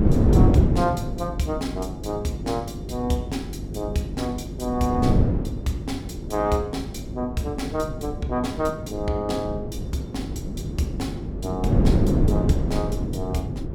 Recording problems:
mains hum; 50 Hz, harmonics up to 400 Hz, SNR 9 dB
wind on the microphone; below 260 Hz, SNR -2 dB

